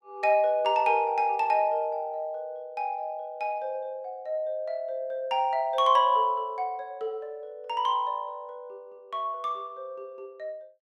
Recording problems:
none

